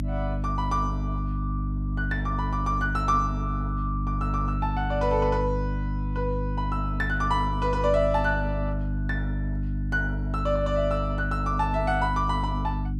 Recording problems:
electrical hum; 50 Hz, harmonics up to 300 Hz, SNR 1 dB

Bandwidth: 13 kHz